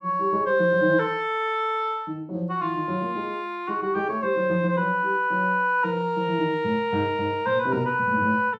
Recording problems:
none

